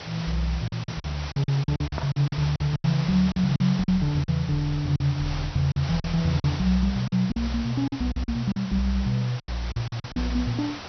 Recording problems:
low-pass filter; nothing above 5.9 kHz
background hiss; slope -2 dB per octave, SNR 12 dB
packet loss; 12% of the sound replaced, filled with silence

